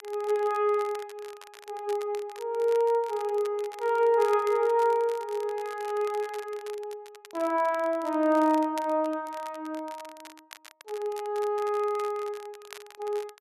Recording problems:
crackle; vinyl, SNR 21 dB

